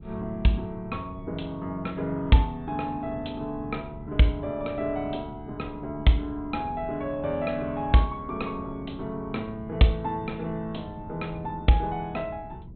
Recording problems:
treble missing; nothing above 4 kHz
wind noise; below 180 Hz, SNR 16 dB

